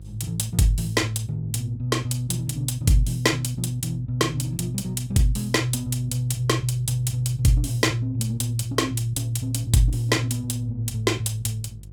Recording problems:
hum; 50 Hz, harmonics up to 350 Hz, SNR 19 dB

